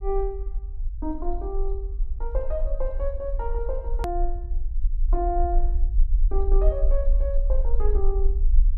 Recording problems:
low-frequency rumble; below 44 Hz, strongest tone 24 Hz, SNR -4 dB
click at an edit; at 4 s

